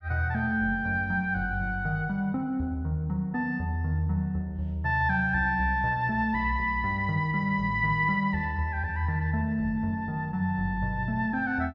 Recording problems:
none

